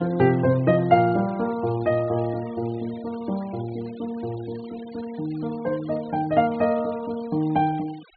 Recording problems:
treble cut off; nothing above 4.4 kHz
denoising artefacts; signal-to-artefact ratio 23 dB

